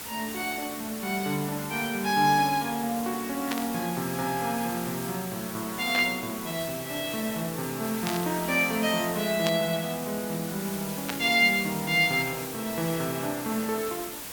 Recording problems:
background hiss; slope -2 dB per octave, SNR 8 dB
burst of static; 5 times, first at 3.5 s; peak 0 dB vs average level

